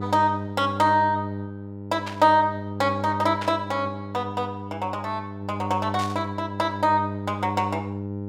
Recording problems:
hum; 50 Hz, harmonics up to 900 Hz, SNR 9 dB
static burst; at 2 s, at 3.5 s and at 6 s; peak -5 dB vs average level

